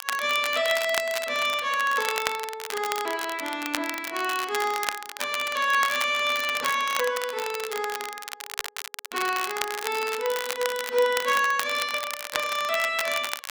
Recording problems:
crackling; vinyl, SNR 7 dB

